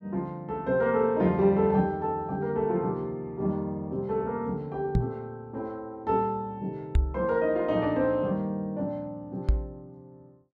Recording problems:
microphone thump; at 5 s, at 7 s and at 9.5 s; peak +7 dB vs average level

